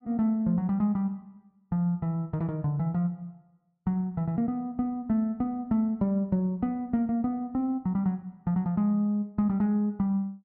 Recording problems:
none

